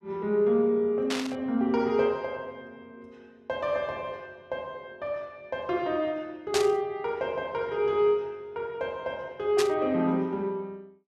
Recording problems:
static burst; at 1 s, at 6.5 s and at 9.5 s; peak +2 dB vs average level

